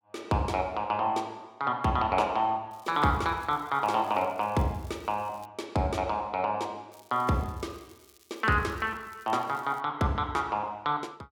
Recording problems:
crackling; from 2.5 to 5.5 s and from 7 to 10 s; loose cable, SNR 27 dB

